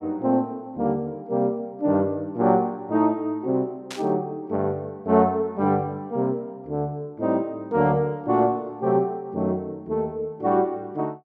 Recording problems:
static burst; at 4 s; peak -6 dB vs average level

